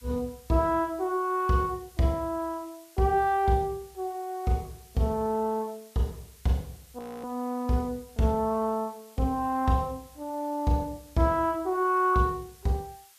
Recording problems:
lossy compression; Vorbis, log-spectral distance 4 dB, nothing above 14.6 kHz
hiss; slope +4 dB per octave, SNR 25 dB
audio freezing; at 7 s

